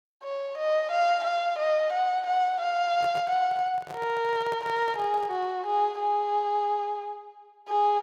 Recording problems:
handling noise; from 3 to 5.5 s; peak -8 dB vs average level

